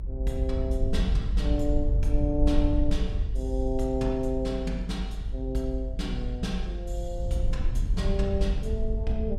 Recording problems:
low-frequency rumble; below 64 Hz, SNR -1 dB

